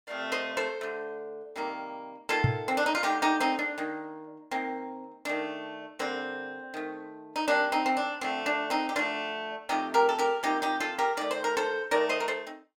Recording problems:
microphone bump; at 2.5 s; peak +8 dB vs average level

